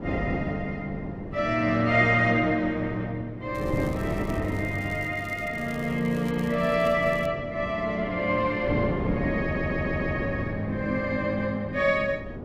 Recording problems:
wind on the microphone; below 400 Hz, SNR 7 dB
crackling; from 3.5 to 7.5 s; loose cable, SNR 24 dB
stutter; at 9.5 s

